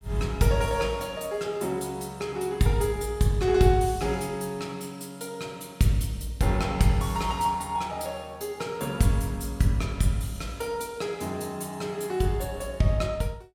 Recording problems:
none

